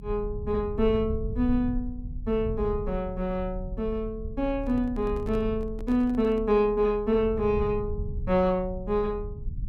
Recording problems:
rumble; below 92 Hz, strongest tone 36 Hz, SNR 10 dB
microphone handling noise; from 4.5 to 6.5 s; peak -11 dB vs average level

